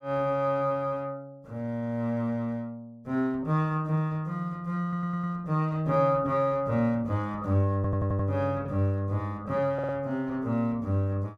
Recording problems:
stutter; at 5 s, at 8 s and at 9.5 s

